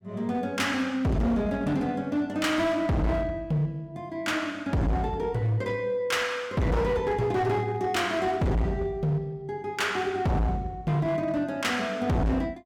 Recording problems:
distorted audio; hard clipping, signal-to-distortion ratio 7 dB

